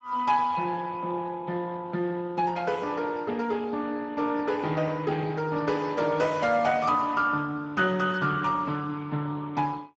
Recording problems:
lossy compression; Speex, log-spectral distance 4 dB, nothing above 7.3 kHz

